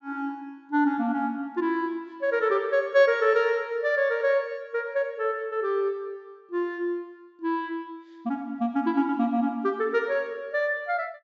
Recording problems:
treble missing; nothing above 8 kHz

